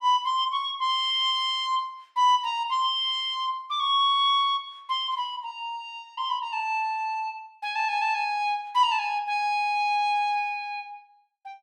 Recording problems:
none

